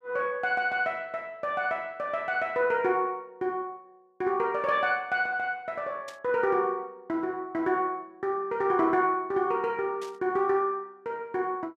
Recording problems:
burst of static; at 6 s and at 10 s; peak -12 dB vs average level

